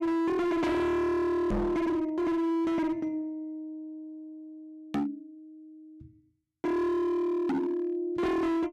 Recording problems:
distortion; hard clipping, signal-to-distortion ratio 6 dB
knock on the microphone; at 1.5 s, at 5 s and at 7.5 s; peak +3 dB vs average level

